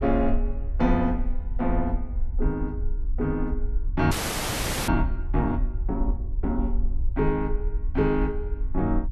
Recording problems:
rumble; below 52 Hz, SNR 3 dB
frozen audio; at 4 s for 1 s

